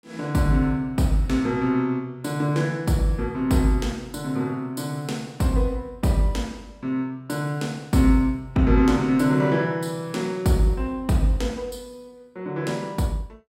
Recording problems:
none

